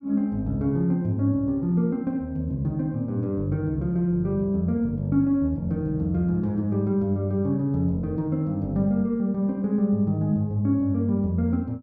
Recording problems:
none

